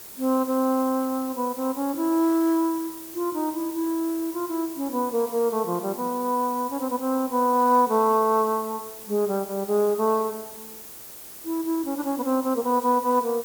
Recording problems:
hiss; SNR 14 dB

